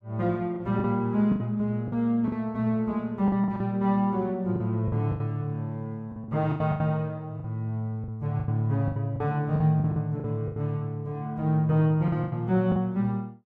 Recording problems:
lost packets; 11% of the sound replaced, filled with the last packet

